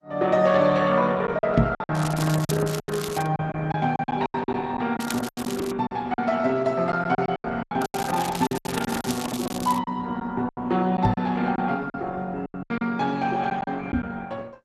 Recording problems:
codec artefacts; Opus, log-spectral distance 4 dB
lost packets; 12% of the sound replaced, filled with silence
microphone bump; at 1.5 s, at 11 s and at 14 s; peak +8 dB vs average level
crackling; from 2 to 3.5 s, at 5 s and from 8 to 10 s; loose cable, SNR 11 dB

